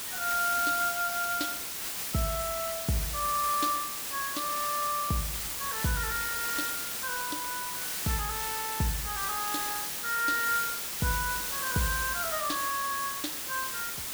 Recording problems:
hiss; slope 0 dB per octave, SNR 0 dB

